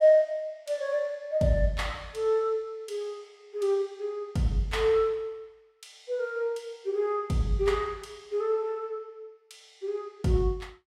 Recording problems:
none

